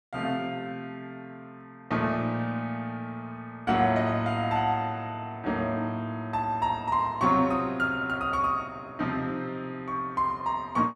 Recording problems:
none

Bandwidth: 14 kHz